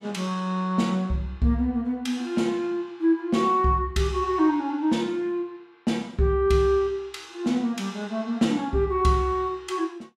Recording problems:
none

